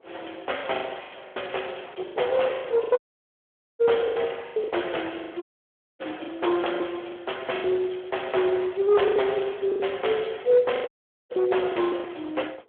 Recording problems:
phone line; 320 Hz to 3.4 kHz, Speex
distortion; hard clipping, signal-to-distortion ratio 13 dB
wind on the microphone; below 890 Hz, SNR 20 dB
lost packets; 12% of the sound replaced, filled with the last packet
dropout; at 3 s for 1 s, at 5.5 s for 0.5 s and at 11 s

